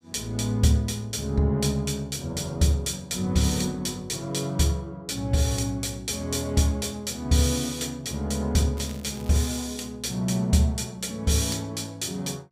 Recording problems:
crackle; at 9 s; loose cable, SNR 21 dB

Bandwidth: 15.5 kHz